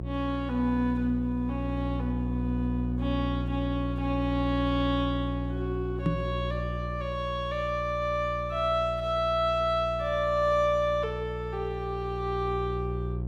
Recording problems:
electrical hum; 60 Hz, harmonics up to 540 Hz, SNR 5 dB
knock on the microphone; at 6 s; peak +6 dB vs average level

